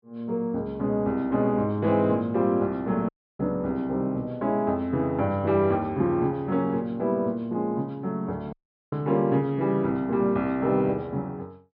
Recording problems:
treble cut off; nothing above 5.5 kHz
dropout; at 3 s and at 8.5 s

